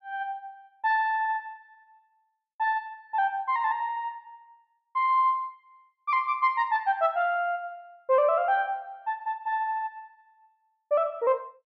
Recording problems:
none

